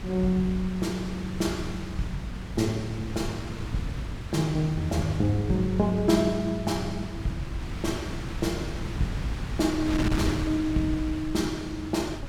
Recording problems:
wind on the microphone; below 270 Hz, SNR 7 dB

